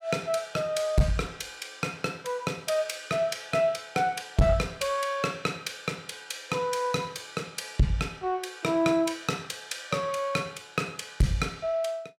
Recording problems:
distortion; soft clipping, signal-to-distortion ratio 8 dB

